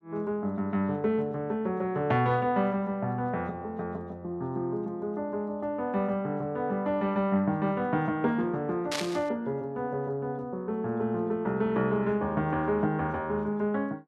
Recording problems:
static burst; at 9 s; peak +2 dB vs average level

